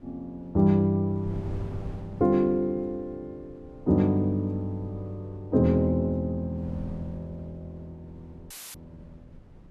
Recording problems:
wind on the microphone; below 210 Hz, SNR 19 dB
dropout; at 8.5 s; filled with static

